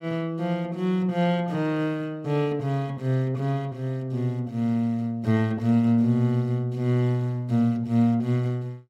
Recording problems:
none

